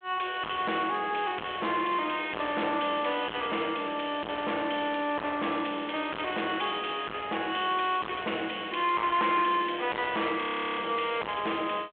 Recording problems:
telephone audio; 300 Hz to 3.4 kHz, G.726
distortion; soft clipping, signal-to-distortion ratio 6 dB
frozen audio; at 10 s

